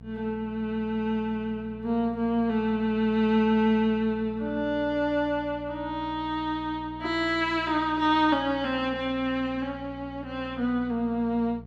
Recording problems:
hum; 60 Hz, harmonics up to 960 Hz, SNR 18 dB

